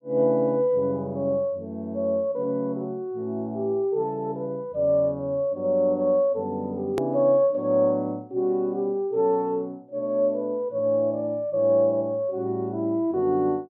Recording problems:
edit click; at 7 s

